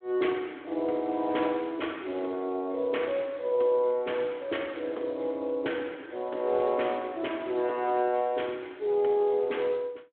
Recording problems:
phone line; 260 Hz to 3.4 kHz, Speex

